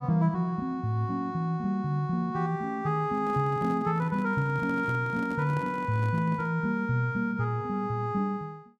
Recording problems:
handling noise; from 3 to 6.5 s; peak -7 dB vs average level

